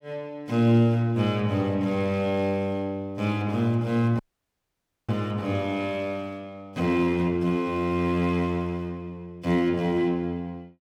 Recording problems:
audio cutting out; at 4 s for 1 s

